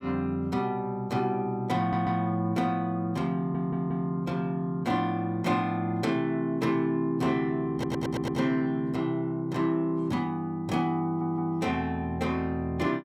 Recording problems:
stutter; 4 times, first at 2 s

